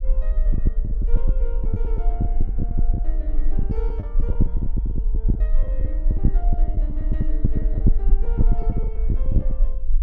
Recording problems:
low-frequency rumble; below 46 Hz, strongest tone 18 Hz, SNR -15 dB
lost packets; 10% of the sound replaced, filled with the last packet

